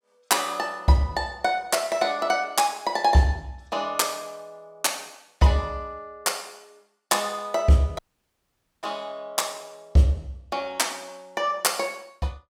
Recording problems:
dropout; at 8 s for 1 s

